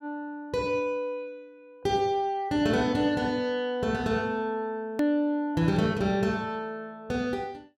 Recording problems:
edit click; at 5 s

